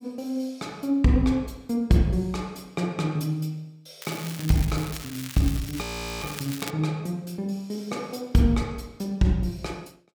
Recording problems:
crackle; from 4 to 6.5 s; loose cable, SNR 11 dB
frozen audio; at 6 s

